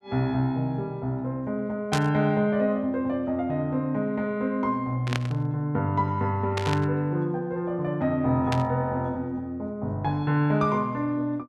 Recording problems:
burst of static; 4 times, first at 2 s; peak +1 dB vs average level

